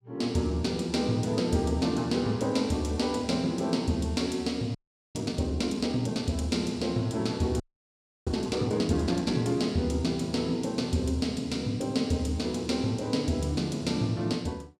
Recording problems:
audio freezing; at 5 s and at 7.5 s for 0.5 s

